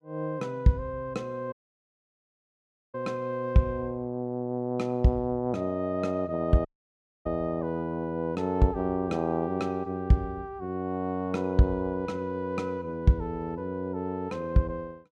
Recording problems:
audio cutting out; at 1.5 s for 1.5 s and at 6.5 s for 0.5 s

